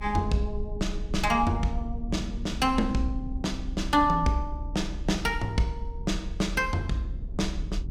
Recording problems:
rumble; below 62 Hz, SNR 8 dB

